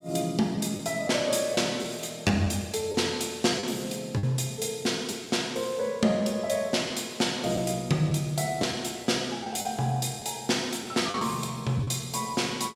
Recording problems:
lost packets; 3% of the sound replaced, filled with the last packet

